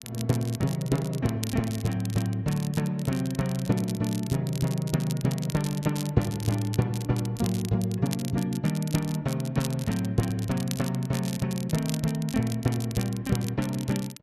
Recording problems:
crackling; vinyl, SNR 13 dB

